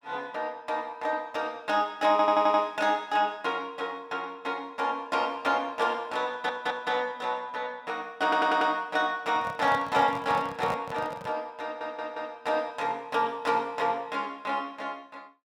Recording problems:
audio stuttering; 4 times, first at 2 s
microphone handling noise; from 9.5 to 11 s; peak -4 dB vs average level

